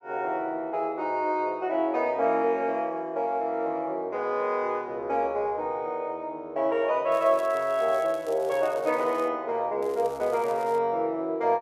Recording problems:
crackling; from 7 to 9.5 s and at 10 s; loose cable, SNR 24 dB

